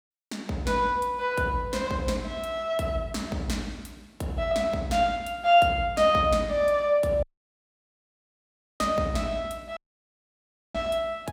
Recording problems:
dropout; at 7 s for 1.5 s and at 10 s for 1 s

